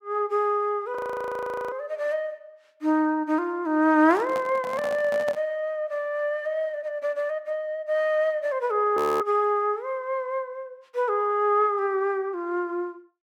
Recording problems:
audio freezing; at 1 s for 1 s and at 9 s
handling noise; from 4 to 5.5 s; peak -5 dB vs average level

